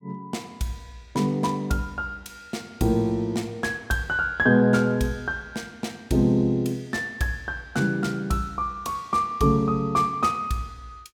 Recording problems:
none

